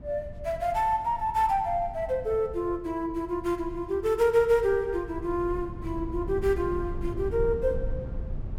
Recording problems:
low-frequency rumble; below 110 Hz, SNR 12 dB

